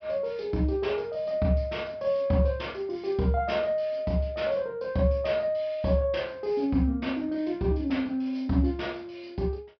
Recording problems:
low-pass filter; nothing above 5.5 kHz

